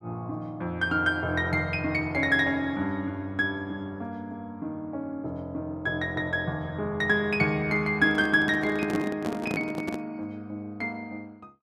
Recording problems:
handling noise; from 8 to 10 s; peak -1 dB vs average level

